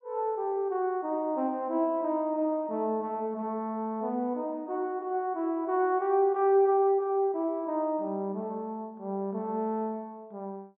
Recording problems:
low-pass filter; nothing above 4 kHz

